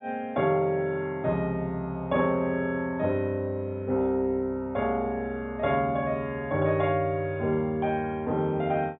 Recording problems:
treble missing; nothing above 4 kHz

